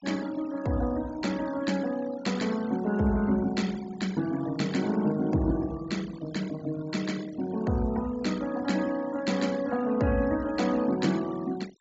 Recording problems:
treble cut off; nothing above 8 kHz
denoising artefacts; signal-to-artefact ratio 17 dB

